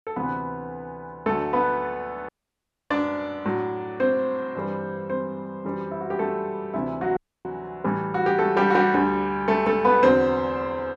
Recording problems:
audio cutting out; at 2.5 s for 0.5 s and at 7 s

